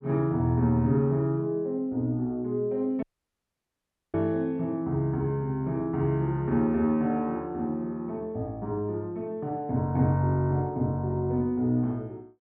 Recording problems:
audio cutting out; at 3 s for 1 s

